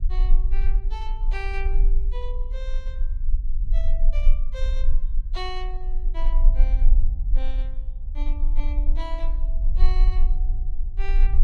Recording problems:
low-frequency rumble; below 36 Hz, strongest tone 20 Hz, SNR -13 dB

